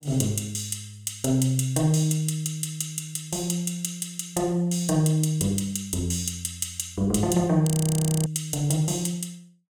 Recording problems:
audio freezing; at 7.5 s for 0.5 s

